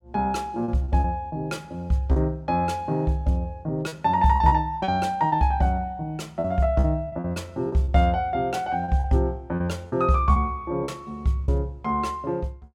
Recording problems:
packet loss; 8% of the sound replaced, filled with repeated pitch periods

